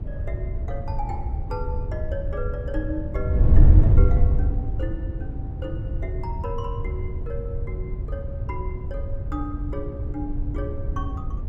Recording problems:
wind noise; below 90 Hz, SNR -9 dB

